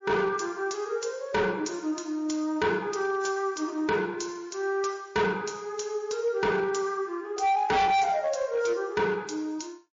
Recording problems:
codec artefacts; MP3, log-spectral distance 4 dB
distortion; hard clipping, signal-to-distortion ratio 7 dB

